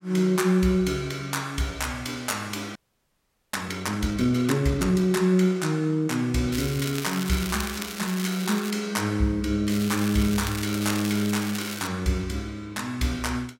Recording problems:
frozen audio; at 3 s for 1 s
crackling; from 6.5 to 8.5 s and from 9.5 to 12 s; loose cable, SNR 10 dB

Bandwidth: 16 kHz